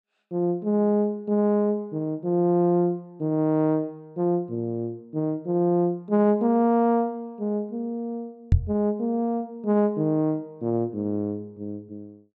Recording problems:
microphone bump; at 8.5 s; peak +8 dB vs average level

